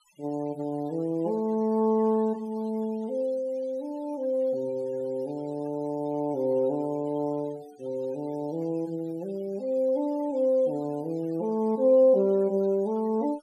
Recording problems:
noise reduction artefacts; signal-to-artefact ratio 28 dB

